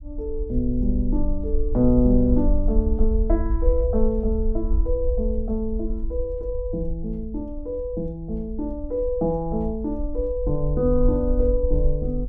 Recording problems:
rumble; below 54 Hz, SNR 3 dB

